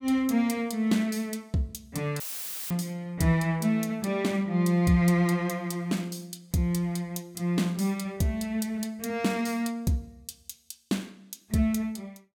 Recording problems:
audio cutting out; at 2 s for 0.5 s; filled with static

